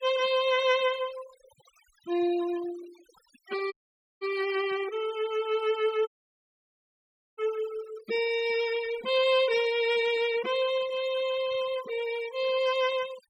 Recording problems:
noise reduction artefacts; signal-to-artefact ratio 17 dB
audio cutting out; at 3.5 s and at 6 s for 1.5 s

